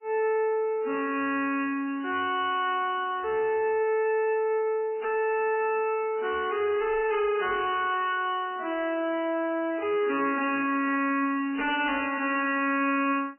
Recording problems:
codec artefacts; MP3, log-spectral distance 4 dB, nothing above 2.7 kHz
distorted audio; soft clipping, signal-to-distortion ratio 10 dB

